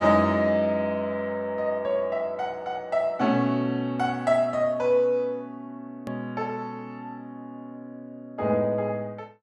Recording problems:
click at an edit; at 6 s

